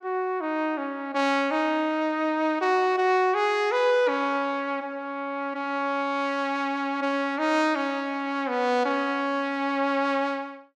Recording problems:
none

